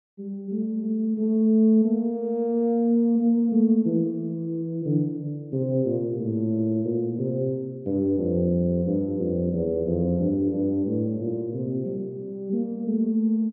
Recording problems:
none

